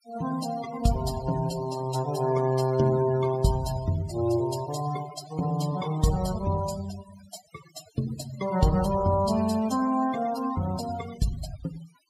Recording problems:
denoising artefacts; signal-to-artefact ratio 15 dB

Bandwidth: 15 kHz